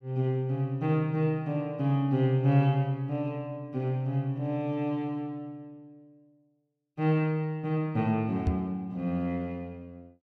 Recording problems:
microphone thump; at 8.5 s; peak +4 dB vs average level

